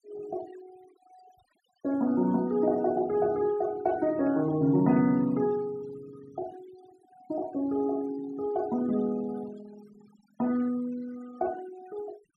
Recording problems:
denoising artefacts; signal-to-artefact ratio 23 dB

